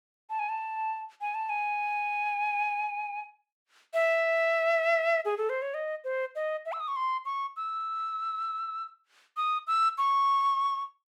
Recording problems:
none

